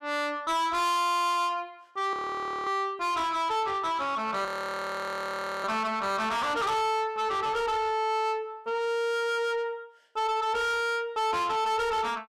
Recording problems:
distortion; soft clipping, signal-to-distortion ratio 6 dB
audio freezing; at 2 s for 0.5 s and at 4.5 s for 1 s

